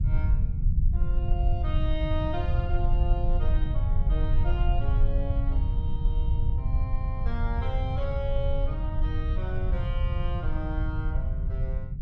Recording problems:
rumble; below 76 Hz, SNR -9 dB

